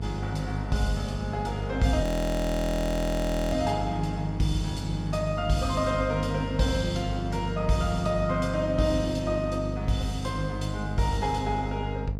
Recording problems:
hum; 50 Hz, harmonics up to 700 Hz, SNR 5 dB
audio freezing; at 2 s for 1.5 s

